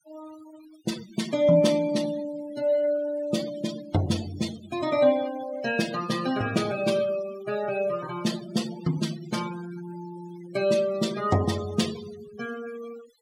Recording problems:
noise reduction artefacts; signal-to-artefact ratio 14 dB

